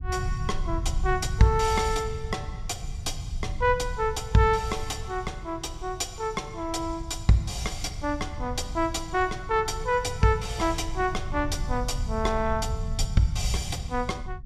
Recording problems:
low-frequency rumble; below 94 Hz, SNR 7 dB

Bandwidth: 14.5 kHz